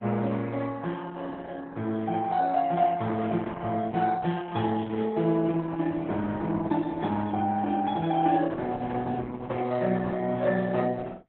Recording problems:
codec artefacts; AAC, then Opus, log-spectral distance 3 dB

